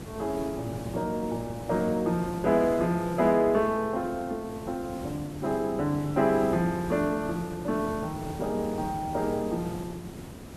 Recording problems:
hiss; slope -6 dB per octave, SNR 12 dB

